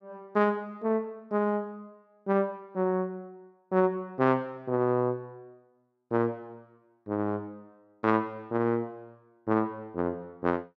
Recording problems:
none

